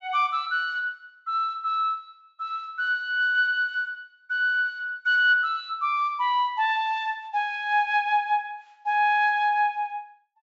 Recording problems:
treble cut off; nothing above 8 kHz

